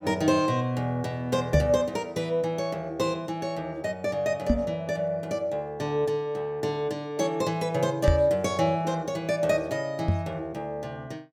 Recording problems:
knock on the microphone; 4 times, first at 1.5 s; peak +8 dB vs average level

